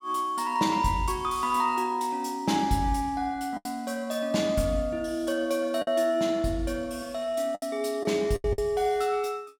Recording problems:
lost packets; 4% of the sound replaced, filled with the last packet

